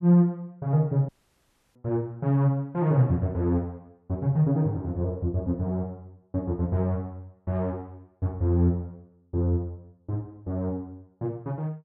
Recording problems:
audio cutting out; at 1 s for 0.5 s

